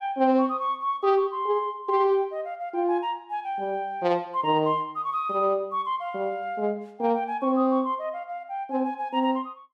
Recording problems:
none

